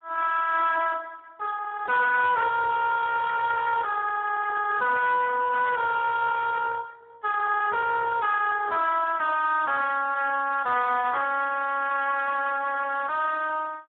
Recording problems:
phone line; 340 Hz to 3.9 kHz, Speex
distorted audio; soft clipping, signal-to-distortion ratio 10 dB

